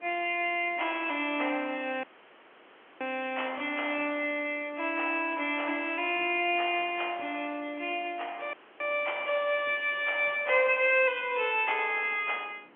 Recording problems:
phone line; 220 Hz to 3.3 kHz, G.711
background hiss; SNR 27 dB
audio cutting out; at 2 s for 1 s and at 8.5 s

